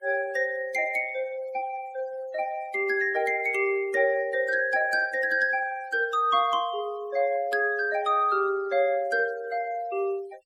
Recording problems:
denoising artefacts; signal-to-artefact ratio 23 dB

